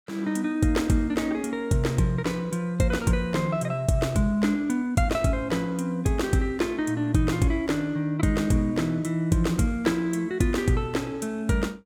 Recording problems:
none

